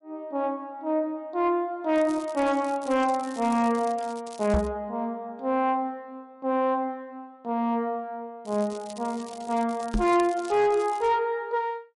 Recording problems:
lossy compression; MP3, log-spectral distance 2 dB
distorted audio; soft clipping, signal-to-distortion ratio 12 dB
crackling; from 2 to 4.5 s and from 8.5 to 11 s; loose cable, SNR 21 dB
microphone bump; at 4.5 s and at 10 s; peak +4 dB vs average level

